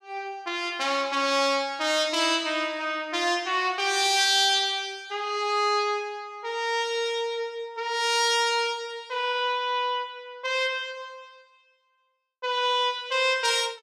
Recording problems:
none

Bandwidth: 15.5 kHz